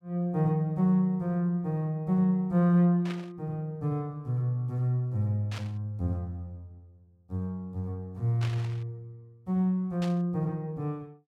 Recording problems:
burst of static; 4 times, first at 3 s; peak -8 dB vs average level

